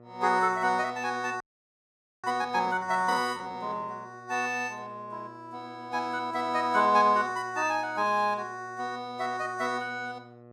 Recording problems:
mains hum; 60 Hz, harmonics up to 1.4 kHz, SNR 23 dB
audio freezing; at 1.5 s for 1 s

